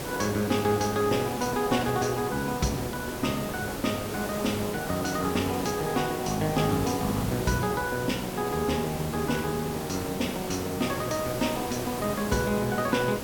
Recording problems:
background hiss; slope -5 dB per octave, SNR 6 dB

